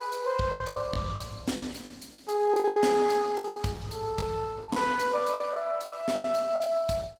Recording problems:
lossy codec; Opus, log-spectral distance 4 dB, nothing above 19 kHz
packet loss; 14% of the sound replaced, filled with the last packet

